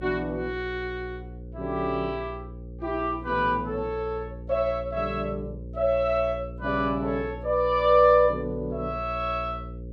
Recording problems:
hum; 60 Hz, harmonics up to 540 Hz, SNR 13 dB

